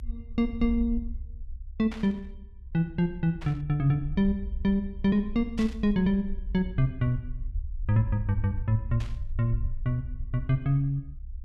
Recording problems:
low-frequency rumble; below 62 Hz, SNR 10 dB
burst of static; 4 times, first at 2 s; peak -10 dB vs average level

